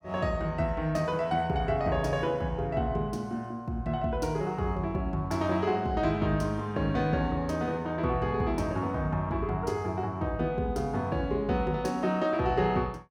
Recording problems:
none

